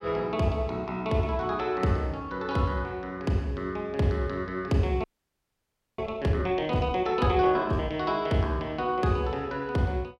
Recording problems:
frozen audio; at 5 s for 1 s

